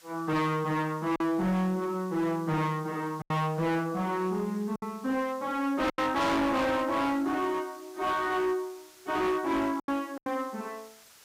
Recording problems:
distorted audio; hard clipping, signal-to-distortion ratio 8 dB
background hiss; slope +1 dB per octave, SNR 24 dB
packet loss; 4% of the sound replaced, filled with silence

